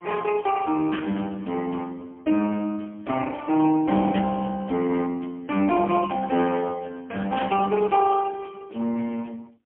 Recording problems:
phone line; 170 Hz to 3.3 kHz, AMR-NB, then MP3

